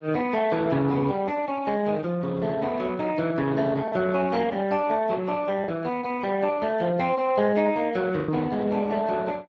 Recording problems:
lossy codec; Speex, log-spectral distance 4 dB
lost packets; 1.7% of the sound replaced, filled with the last packet

